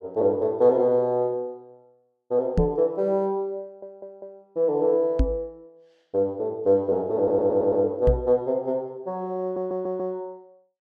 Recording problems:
microphone thump; at 2.5 s, at 5 s and at 8 s; peak +5 dB vs average level
stutter; at 3.5 s, at 7 s and at 9.5 s

